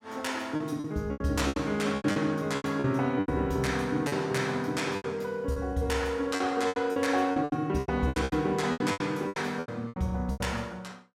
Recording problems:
lost packets; 16% of the sound replaced, filled with repeated pitch periods

